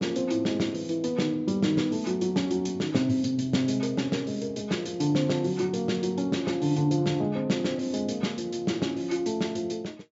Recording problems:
low-pass filter; nothing above 7.5 kHz

